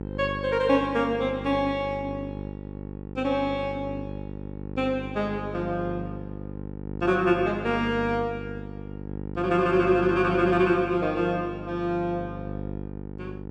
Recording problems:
hum; 50 Hz, harmonics up to 1 kHz, SNR 10 dB

